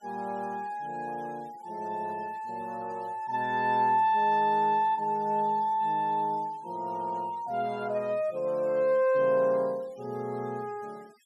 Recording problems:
denoising artefacts; signal-to-artefact ratio 28 dB

